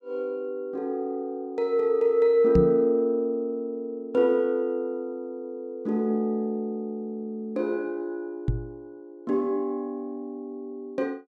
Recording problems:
microphone bump; at 2.5 s and at 8.5 s; peak +6 dB vs average level

